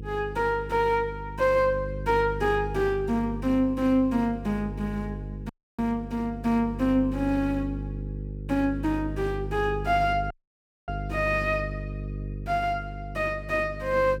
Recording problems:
hum; 50 Hz, harmonics up to 500 Hz, SNR 9 dB
audio cutting out; at 5.5 s and at 10 s for 0.5 s

